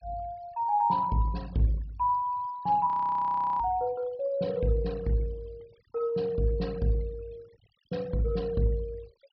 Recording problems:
treble missing; nothing above 5.5 kHz
denoising artefacts; signal-to-artefact ratio 26 dB
audio freezing; at 3 s for 0.5 s

